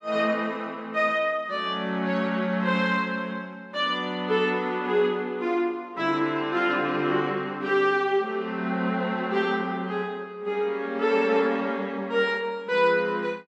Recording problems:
none

